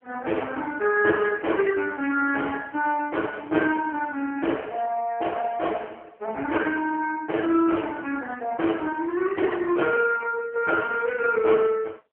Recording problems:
phone line; 280 Hz to 3.1 kHz, AMR-NB

